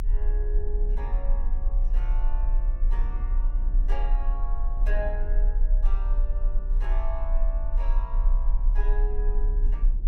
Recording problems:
low-frequency rumble; below 36 Hz, strongest tone 32 Hz, SNR -13 dB
wind noise; below 230 Hz, SNR 8 dB

